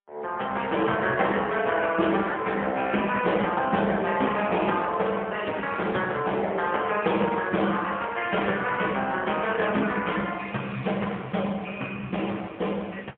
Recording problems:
telephone audio; 190 Hz to 3.3 kHz, AMR-NB, then MP3

